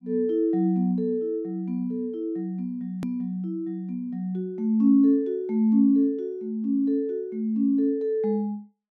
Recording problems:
click at an edit; at 3 s

